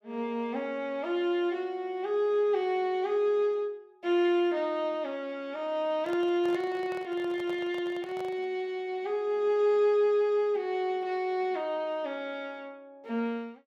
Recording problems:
handling noise; from 6 to 8.5 s; peak -9 dB vs average level

